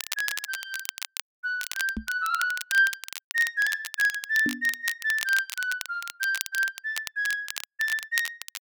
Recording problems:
crackling; vinyl, SNR 9 dB
microphone thump; at 2 s and at 4.5 s; peak 0 dB vs average level

